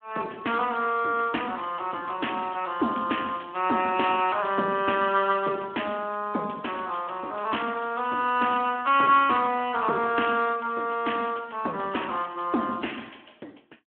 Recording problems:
telephone audio; 240 Hz to 3.3 kHz, Speex

